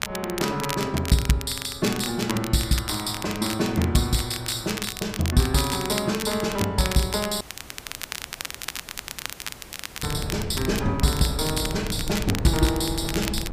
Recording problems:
wind noise; below 210 Hz, SNR 12 dB
crackle; vinyl, SNR 9 dB
dropout; at 7.5 s for 2.5 s

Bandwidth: 15 kHz